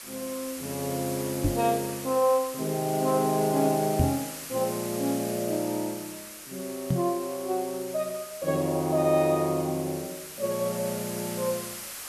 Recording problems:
background hiss; slope +1 dB per octave, SNR 10 dB
microphone bump; at 1.5 s, at 4 s and at 7 s; peak +6 dB vs average level

